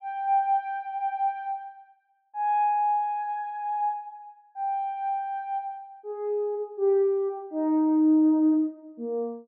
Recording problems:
none

